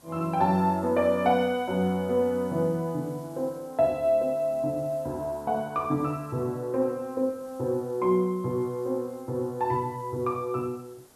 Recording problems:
hiss; SNR 26 dB

